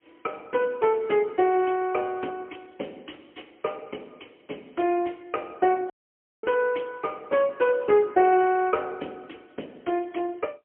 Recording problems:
telephone audio; 240 Hz to 3.2 kHz, AMR-NB, then MP3
audio cutting out; at 6 s for 0.5 s

